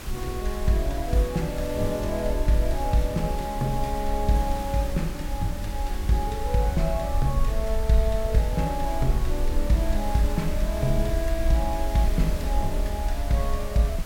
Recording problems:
hiss; slope -3 dB per octave, SNR 12 dB
low-frequency rumble; below 58 Hz, SNR 4 dB

